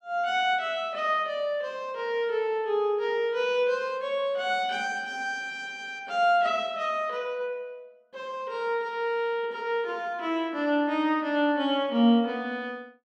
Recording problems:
none

